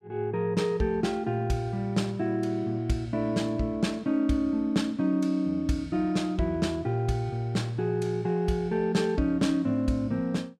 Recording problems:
none

